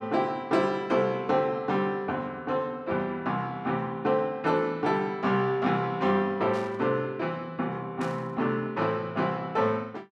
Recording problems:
static burst; at 6.5 s and at 8 s; peak -13 dB vs average level

